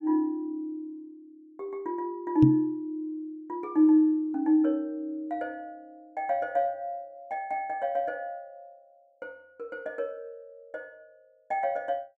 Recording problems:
microphone bump; at 2.5 s; peak +9 dB vs average level

